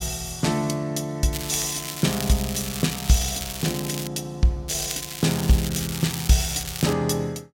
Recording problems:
crackling; from 1.5 to 4 s and from 4.5 to 7 s; loose cable, SNR 7 dB

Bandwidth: 16.5 kHz